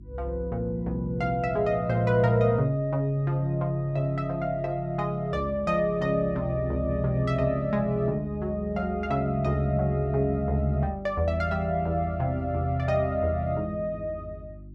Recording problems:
electrical hum; 50 Hz, harmonics up to 350 Hz, SNR 19 dB

